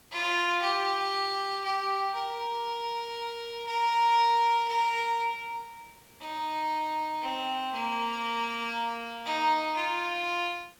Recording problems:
background hiss; slope -2 dB per octave, SNR 28 dB

